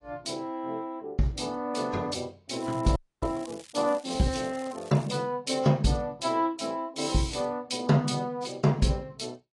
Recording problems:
lossy compression; AAC, log-spectral distance 4 dB, nothing above 10.4 kHz
crackling; from 2.5 to 5 s; loose cable, SNR 21 dB
audio freezing; at 3 s

